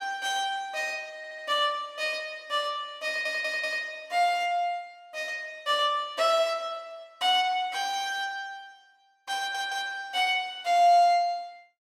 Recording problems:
stutter; at 1 s, at 3 s and at 9.5 s

